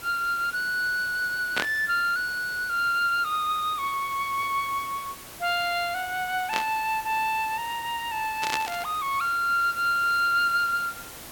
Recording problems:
background hiss; slope -2 dB per octave, SNR 15 dB
static burst; at 1.5 s, at 6.5 s and at 8.5 s; peak +3 dB vs average level

